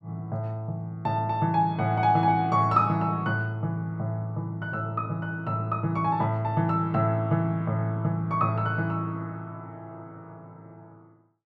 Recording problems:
none

